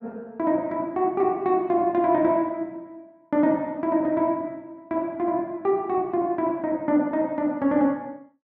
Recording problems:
none

